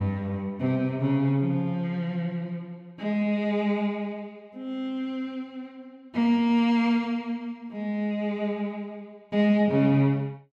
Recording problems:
none

